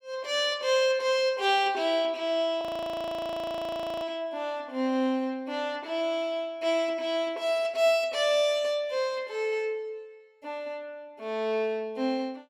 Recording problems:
frozen audio; at 2.5 s for 1.5 s

